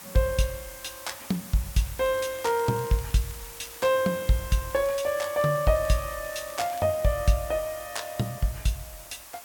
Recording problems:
hiss; SNR 14 dB
crackling; from 2 to 4 s and from 4.5 to 7 s; loose cable, SNR 23 dB

